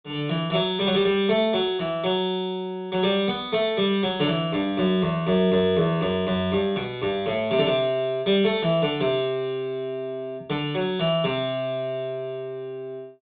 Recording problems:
treble missing; nothing above 4 kHz

